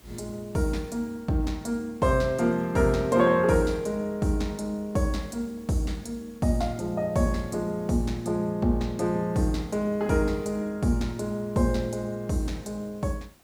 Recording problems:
hiss; slope -3 dB per octave, SNR 29 dB

